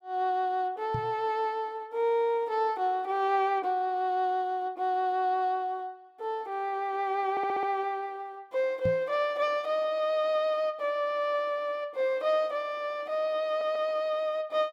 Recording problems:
knock on the microphone; at 1 s and at 9 s; peak 0 dB vs average level
audio stuttering; at 7.5 s and at 13 s

